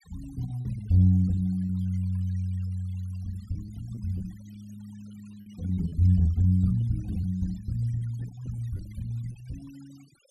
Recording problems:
noise reduction artefacts; signal-to-artefact ratio 27 dB
packet loss; 8% of the sound replaced, filled with repeated pitch periods

